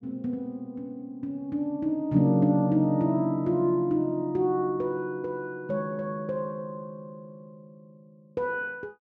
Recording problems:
none

